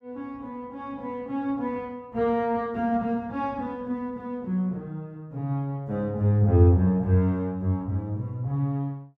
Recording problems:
none

